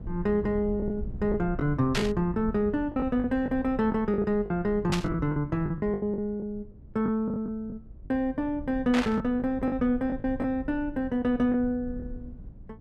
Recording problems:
low-frequency rumble; below 110 Hz, SNR 14 dB
lost packets; 9% of the sound replaced, filled with the last packet
static burst; at 2 s, at 5 s and at 9 s; peak +2 dB vs average level

